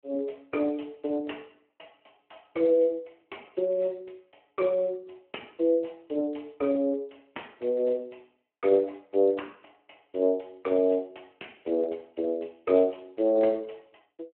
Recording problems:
phone line; 280 Hz to 3.2 kHz, Speex

